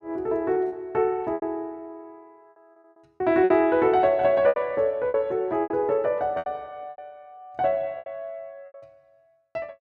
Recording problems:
lost packets; 10% of the sound replaced, filled with repeated pitch periods

